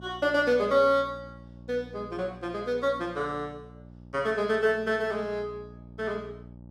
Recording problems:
electrical hum; 60 Hz, harmonics up to 900 Hz, SNR 20 dB

